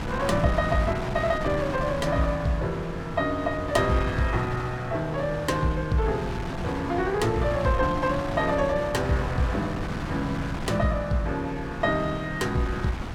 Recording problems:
wind noise; below 820 Hz, SNR 8 dB

